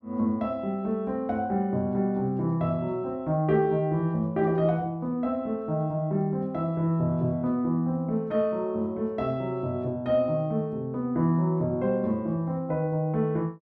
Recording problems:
none

